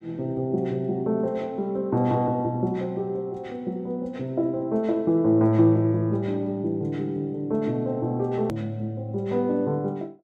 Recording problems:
hard cut with a click; at 8.5 s

